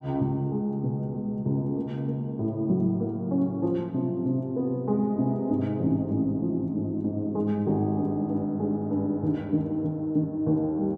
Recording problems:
none

